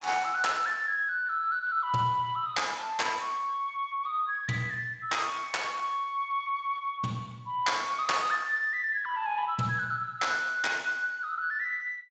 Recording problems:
lossy codec; Speex, log-spectral distance 3 dB, nothing above 7.6 kHz

